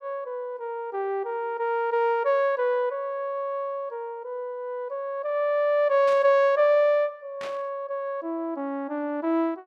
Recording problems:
static burst; at 6 s and at 7.5 s; peak -10 dB vs average level

